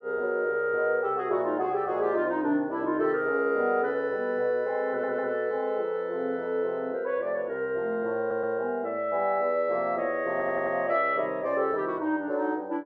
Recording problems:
audio stuttering; at 5 s, at 8 s and at 10 s

